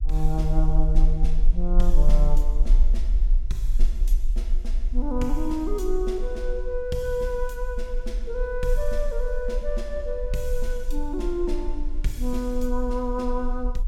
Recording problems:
rumble; below 38 Hz, strongest tone 20 Hz, SNR -2 dB

